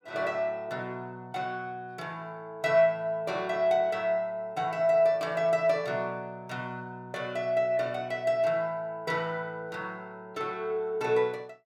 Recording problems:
none

